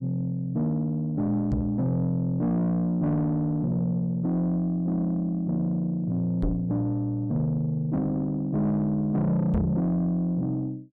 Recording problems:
distorted audio; soft clipping, signal-to-distortion ratio 10 dB
microphone bump; at 1.5 s, at 6.5 s and at 9.5 s; peak +4 dB vs average level

